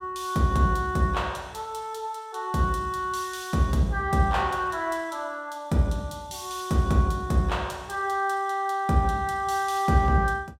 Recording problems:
none

